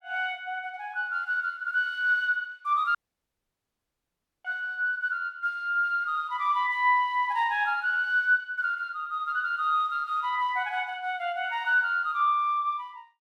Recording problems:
dropout; at 3 s for 1.5 s

